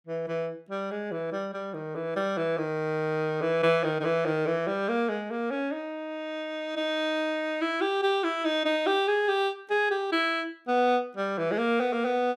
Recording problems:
none

